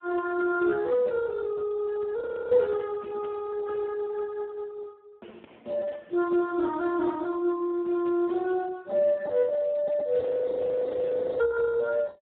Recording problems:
telephone audio; 240 Hz to 3.4 kHz, Speex
frozen audio; at 2 s and at 10 s for 1 s

